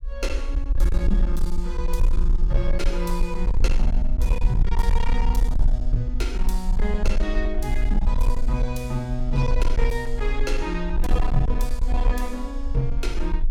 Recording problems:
distortion; hard clipping, uneven, signal-to-distortion ratio 10 dB
low-frequency rumble; below 46 Hz, strongest tone 20 Hz, SNR -4 dB

